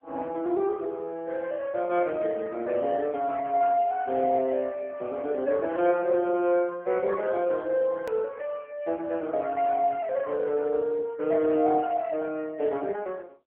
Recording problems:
telephone audio; 190 Hz to 3.3 kHz, AMR-NB
edit click; at 8 s

